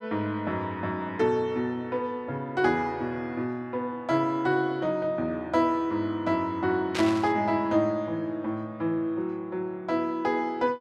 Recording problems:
burst of static; at 7 s; peak -1 dB vs average level

